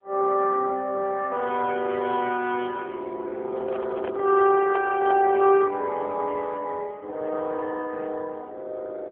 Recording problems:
telephone audio; 320 Hz to 3.4 kHz, AMR-NB
microphone handling noise; from 3.5 to 5.5 s; peak -3 dB vs average level

